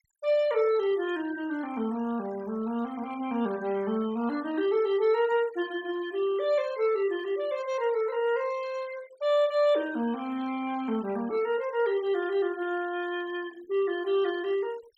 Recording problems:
denoising artefacts; signal-to-artefact ratio 22 dB

